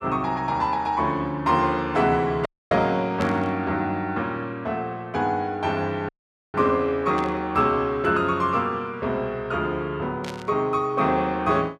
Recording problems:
audio cutting out; at 2.5 s and at 6 s
static burst; at 3 s, at 7 s and at 10 s; peak -8 dB vs average level

